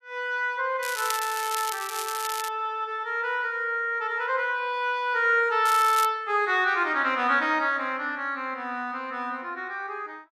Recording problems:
crackle; from 1 to 2.5 s and at 5.5 s; loose cable, SNR 9 dB

